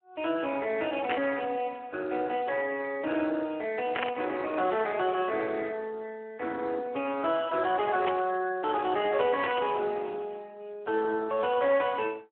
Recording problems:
phone line; 280 Hz to 3.3 kHz, Speex
static burst; 4 times, first at 1 s; peak +2 dB vs average level

